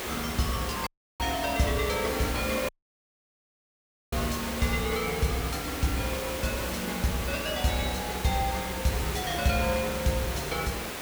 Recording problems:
background hiss; slope -4 dB per octave, SNR 4 dB
audio cutting out; at 1 s and at 2.5 s for 1.5 s

